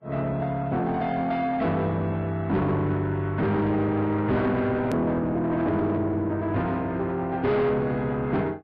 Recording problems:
lossy codec; Vorbis, log-spectral distance 2 dB, nothing above 13.1 kHz
distortion; soft clipping, signal-to-distortion ratio 9 dB
edit click; at 5 s

